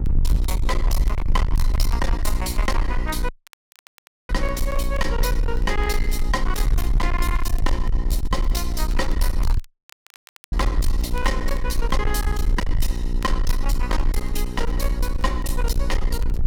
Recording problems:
distorted audio; hard clipping, uneven, signal-to-distortion ratio 6 dB
electrical hum; 60 Hz, harmonics up to 960 Hz, SNR 5 dB
low-frequency rumble; below 48 Hz, strongest tone 22 Hz, SNR -2 dB
crackle; vinyl, SNR 23 dB
dropout; at 3.5 s for 1 s and at 9.5 s for 1 s

